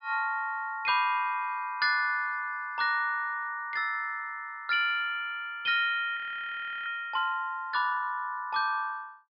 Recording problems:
low-pass filter; nothing above 5 kHz
audio freezing; at 6 s for 0.5 s

